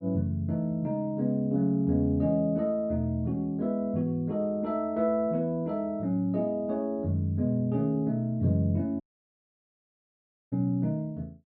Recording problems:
dropout; at 9 s for 1.5 s

